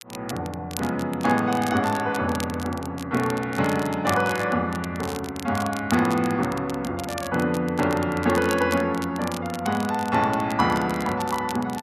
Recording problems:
crackling; vinyl, SNR 15 dB

